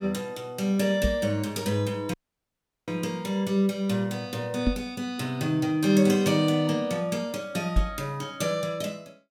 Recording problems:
microphone thump; at 1 s, at 4.5 s and at 8 s; peak +6 dB vs average level
audio cutting out; at 2 s for 0.5 s

